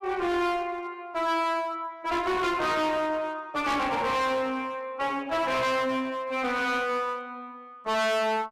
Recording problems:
distortion; hard clipping, uneven, signal-to-distortion ratio 5 dB

